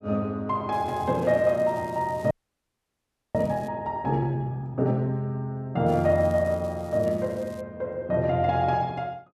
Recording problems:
crackling; from 0.5 to 3.5 s and from 6 to 7.5 s; loose cable, SNR 27 dB
audio freezing; at 2.5 s for 1 s

